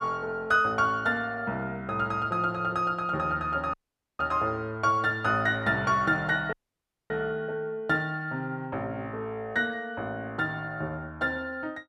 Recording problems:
dropout; at 3.5 s and at 6.5 s for 0.5 s

